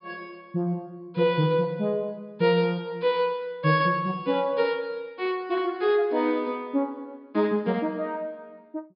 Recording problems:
treble cut off; nothing above 5.5 kHz

